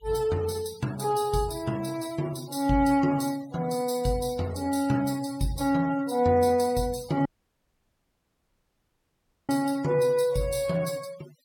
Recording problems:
noise reduction artefacts; signal-to-artefact ratio 20 dB
audio cutting out; at 7.5 s for 2 s

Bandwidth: 17 kHz